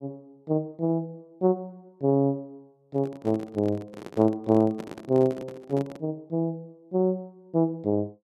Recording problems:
handling noise; from 3 to 6 s; peak -8 dB vs average level

